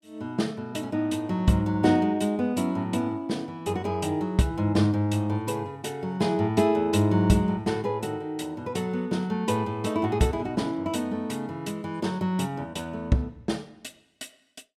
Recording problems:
none

